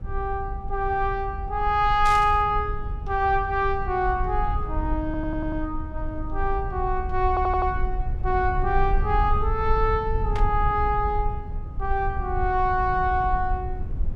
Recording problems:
low-frequency rumble; below 66 Hz, SNR 6 dB
burst of static; at 2 s and at 10 s; peak -7 dB vs average level
audio stuttering; at 5 s and at 7.5 s

